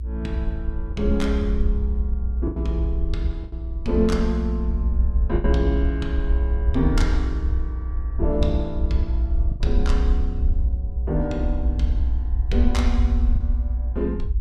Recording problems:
hum; 60 Hz, harmonics up to 360 Hz, SNR 23 dB
rumble; below 62 Hz, SNR -3 dB
packet loss; 3% of the sound replaced, filled with the last packet

